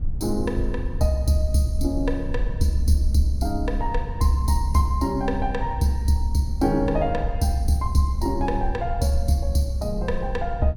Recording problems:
rumble; below 68 Hz, SNR 6 dB

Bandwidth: 17.5 kHz